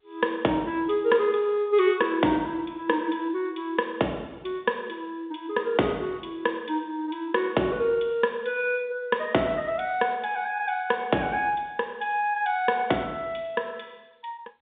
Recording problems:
phone line; 190 Hz to 3.7 kHz, G.711

